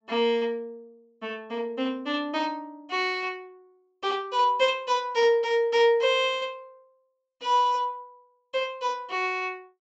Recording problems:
treble cut off; nothing above 8 kHz

